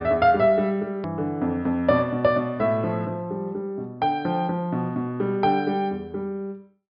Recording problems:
low-pass filter; nothing above 5.5 kHz
click at an edit; at 1 s

